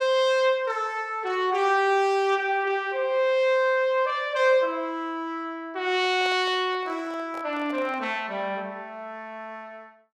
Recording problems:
handling noise; from 6 to 8 s; peak -10 dB vs average level

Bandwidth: 14.5 kHz